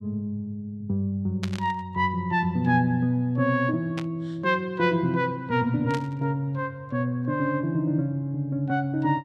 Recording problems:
burst of static; at 1.5 s, at 4 s and at 6 s; peak -4 dB vs average level

